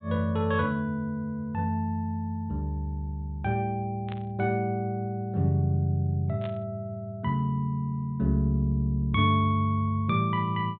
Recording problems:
treble missing; nothing above 4 kHz
static burst; at 4 s and at 6.5 s; peak -12 dB vs average level

